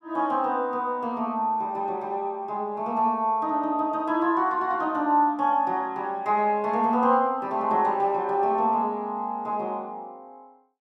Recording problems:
none

